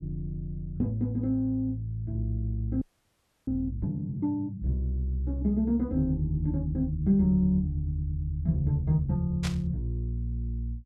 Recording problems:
audio freezing; at 3 s for 0.5 s
static burst; at 9.5 s; peak -3 dB vs average level

